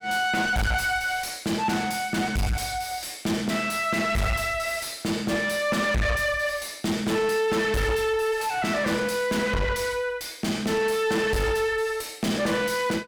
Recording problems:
distortion; soft clipping, signal-to-distortion ratio 5 dB

